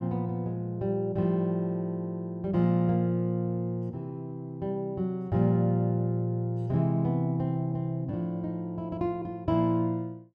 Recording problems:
none

